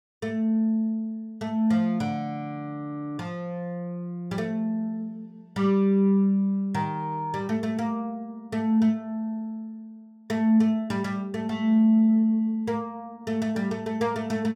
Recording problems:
none

